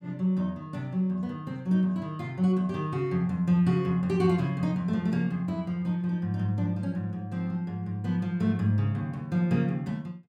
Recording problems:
none

